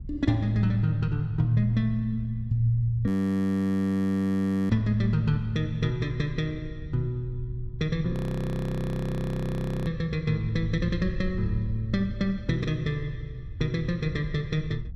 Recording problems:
wind on the microphone; below 94 Hz, SNR 13 dB
audio freezing; at 3 s for 1.5 s and at 8 s for 1.5 s

